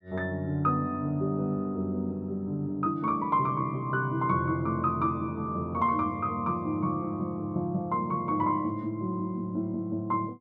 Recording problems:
none

